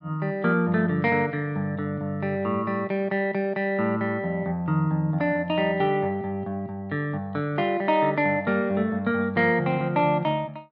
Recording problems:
none

